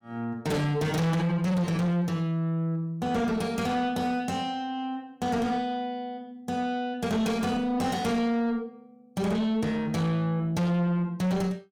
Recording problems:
distortion; soft clipping, signal-to-distortion ratio 7 dB

